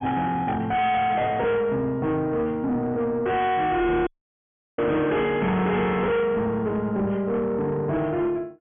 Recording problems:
treble cut off; nothing above 3.4 kHz
distortion; soft clipping, signal-to-distortion ratio 7 dB
audio cutting out; at 4 s for 0.5 s

